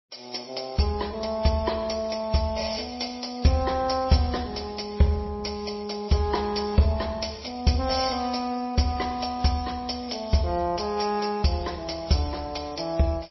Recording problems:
lossy codec; MP3, then MP3, log-spectral distance 7 dB, nothing above 5.7 kHz

